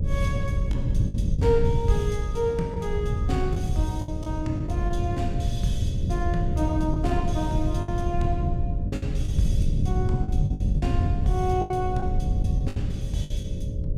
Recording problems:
hum; 60 Hz, harmonics up to 600 Hz, SNR 12 dB
wind on the microphone; below 120 Hz, SNR -3 dB
lost packets; 7% of the sound replaced, filled with the last packet

